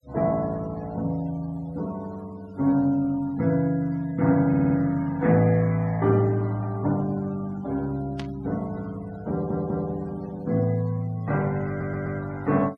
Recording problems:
noise reduction artefacts; signal-to-artefact ratio 25 dB
audio stuttering; at 4.5 s, at 9.5 s and at 12 s
burst of static; at 8 s; peak -9 dB vs average level

